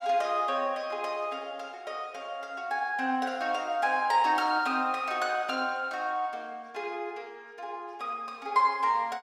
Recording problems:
none

